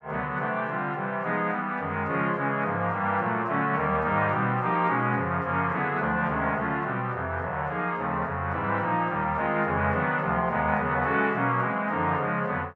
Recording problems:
none

